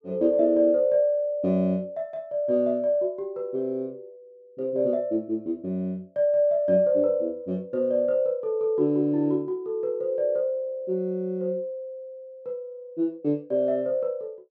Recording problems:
none

